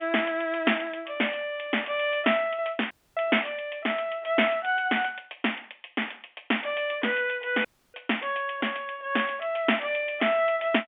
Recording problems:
phone line; 220 Hz to 3.4 kHz, G.711
dropout; at 3 s and at 7.5 s

